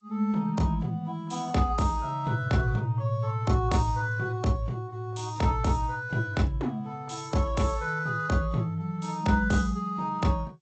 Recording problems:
lossy compression; AAC, then G.722, log-spectral distance 2 dB, nothing above 7.8 kHz

